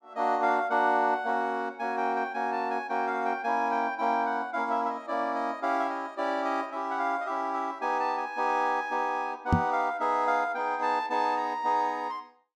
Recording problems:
knock on the microphone; at 9.5 s; peak +8 dB vs average level

